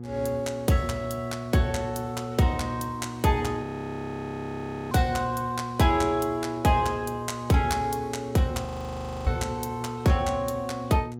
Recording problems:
hum; 60 Hz, harmonics up to 840 Hz, SNR 10 dB
frozen audio; at 3.5 s for 1.5 s and at 8.5 s for 0.5 s

